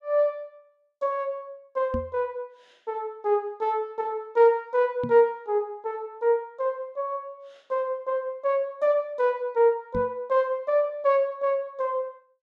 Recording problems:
microphone bump; at 2 s, at 5 s and at 10 s; peak -2 dB vs average level

